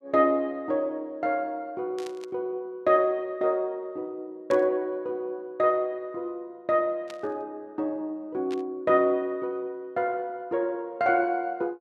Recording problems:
burst of static; 4 times, first at 2 s; peak -11 dB vs average level

